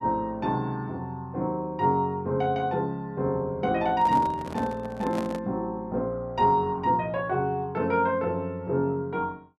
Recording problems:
handling noise; from 4 to 5.5 s; peak -3 dB vs average level

